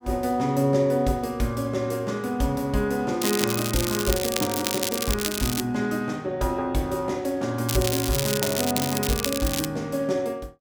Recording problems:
crackling; from 3 to 5.5 s and from 7.5 to 9.5 s; loose cable, SNR 2 dB

